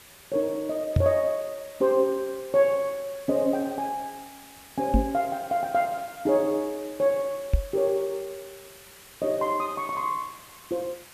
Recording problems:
hiss; slope -1 dB per octave, SNR 20 dB
microphone thump; at 1 s, at 5 s and at 7.5 s; peak +8 dB vs average level

